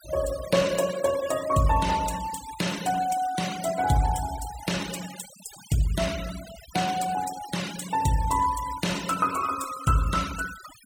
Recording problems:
denoising artefacts; signal-to-artefact ratio 12 dB

